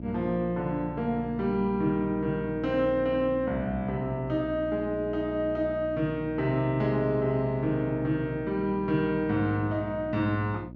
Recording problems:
electrical hum; 60 Hz, harmonics up to 660 Hz, SNR 12 dB

